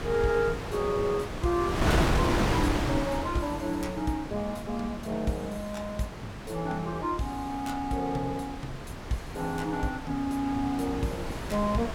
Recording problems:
wind noise; below 1 kHz, SNR 3 dB

